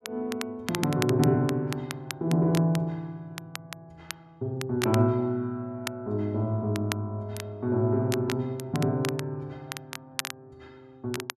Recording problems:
crackling; vinyl, SNR 11 dB

